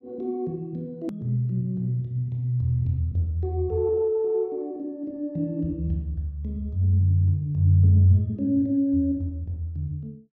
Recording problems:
edit click; at 1 s

